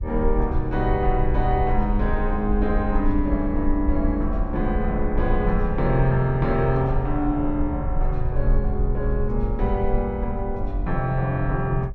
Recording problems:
low-frequency rumble; below 52 Hz, SNR 4 dB

